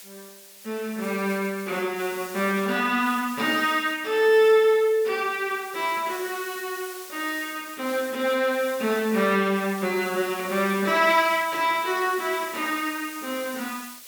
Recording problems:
background hiss; slope +2 dB per octave, SNR 16 dB

